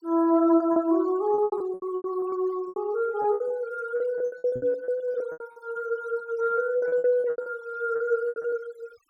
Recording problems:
denoising artefacts; signal-to-artefact ratio 25 dB
packet loss; 18% of the sound replaced, filled with repeated pitch periods
microphone bump; at 4.5 s; peak -9 dB vs average level

